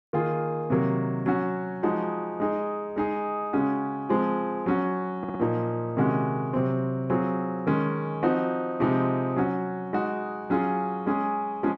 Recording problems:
audio stuttering; at 5 s

